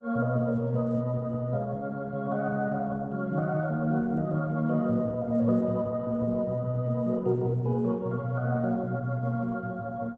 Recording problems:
codec artefacts; Opus, log-spectral distance 2 dB

